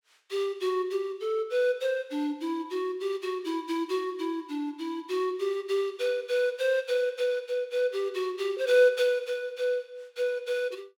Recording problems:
none

